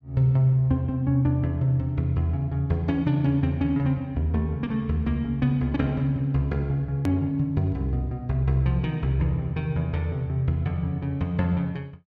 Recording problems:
hard cut with a click; at 7 s

